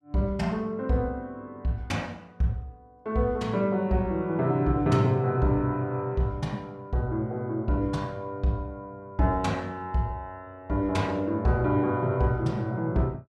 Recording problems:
none

